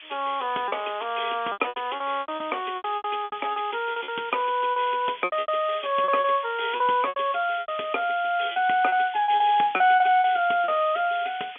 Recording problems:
telephone audio; 240 Hz to 3.5 kHz, G.711
hiss; SNR 17 dB
lost packets; 13% of the sound replaced, filled with repeated pitch periods

